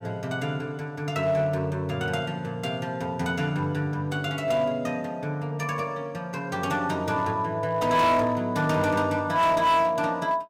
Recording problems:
distortion; hard clipping, uneven, signal-to-distortion ratio 12 dB

